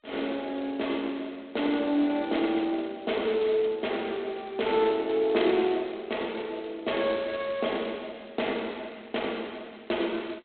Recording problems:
telephone audio; 240 Hz to 3.9 kHz, G.726

